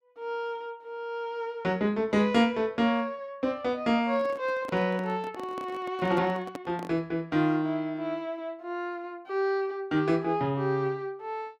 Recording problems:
microphone handling noise; from 4 to 7 s; peak -5 dB vs average level

